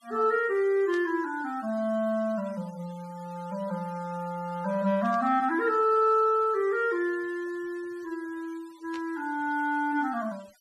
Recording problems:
denoising artefacts; signal-to-artefact ratio 26 dB
static burst; at 1 s, at 5 s and at 9 s; peak -15 dB vs average level

